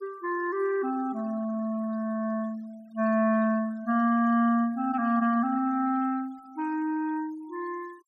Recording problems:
noise reduction artefacts; signal-to-artefact ratio 27 dB

